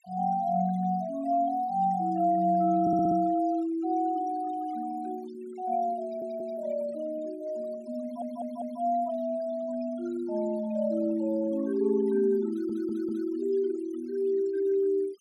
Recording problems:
denoising artefacts; signal-to-artefact ratio 22 dB
stutter; 4 times, first at 3 s

